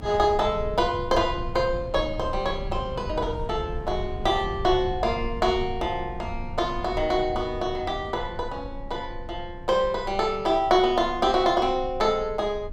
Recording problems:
low-frequency rumble; below 100 Hz, strongest tone 20 Hz, SNR 12 dB

